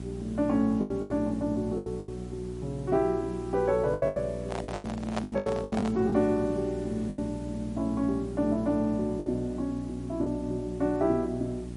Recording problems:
codec artefacts; MP3, log-spectral distance 2 dB
electrical hum; 60 Hz, harmonics up to 720 Hz, SNR 10 dB
background hiss; slope -2 dB per octave, SNR 25 dB
packet loss; 9% of the sound replaced, filled with the last packet
microphone handling noise; from 4.5 to 6 s; peak +1 dB vs average level

